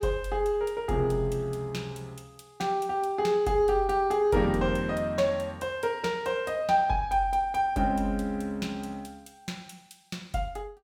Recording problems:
none

